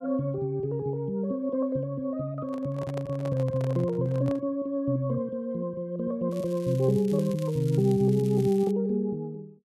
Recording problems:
microphone handling noise; from 2.5 to 4.5 s; peak -7 dB vs average level
crackling; from 6.5 to 8.5 s; loose cable, SNR 22 dB

